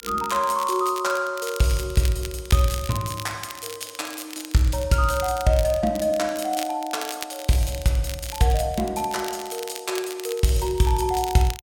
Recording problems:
crackling; vinyl, SNR 13 dB

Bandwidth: 17 kHz